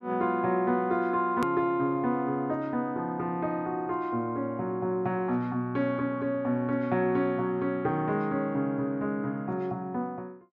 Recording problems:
treble cut off; nothing above 8 kHz
click at an edit; at 1.5 s

